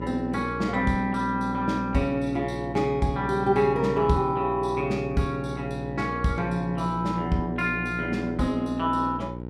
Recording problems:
mains hum; 60 Hz, harmonics up to 1 kHz, SNR 9 dB

